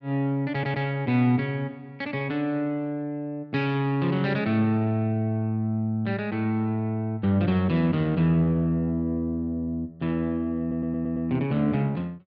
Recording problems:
audio stuttering; at 0.5 s and at 11 s

